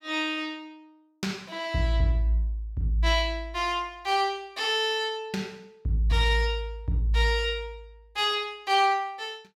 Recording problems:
none

